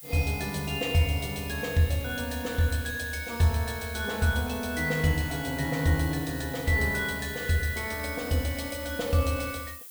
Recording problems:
hiss; slope +3 dB per octave, SNR 13 dB

